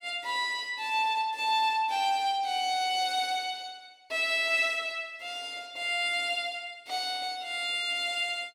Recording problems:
none

